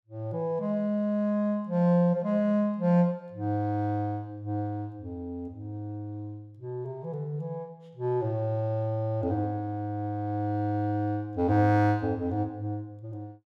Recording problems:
none

